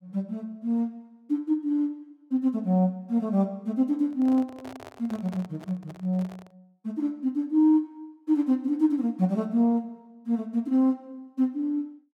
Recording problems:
microphone handling noise; from 4 to 6.5 s; peak -12 dB vs average level

